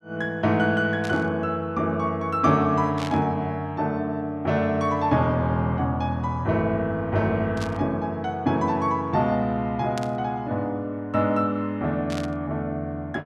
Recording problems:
burst of static; 5 times, first at 1 s; peak -6 dB vs average level

